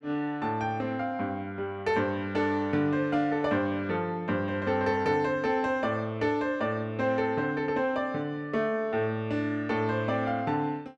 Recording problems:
none

